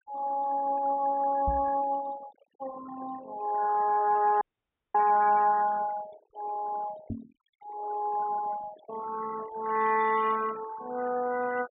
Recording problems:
treble cut off; nothing above 4 kHz
denoising artefacts; signal-to-artefact ratio 17 dB
knock on the microphone; at 1.5 s and at 7 s; peak -1 dB vs average level
dropout; at 4.5 s for 0.5 s

